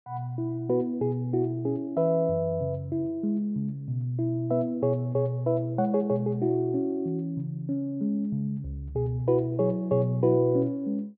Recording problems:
low-pass filter; nothing above 4.6 kHz

